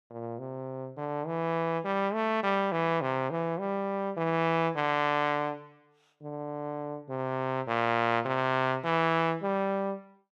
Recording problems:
none

